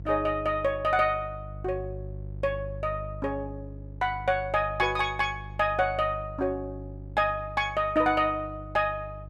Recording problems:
hum; 50 Hz, harmonics up to 500 Hz, SNR 13 dB

